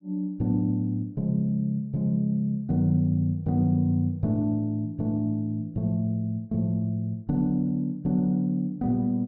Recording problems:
none

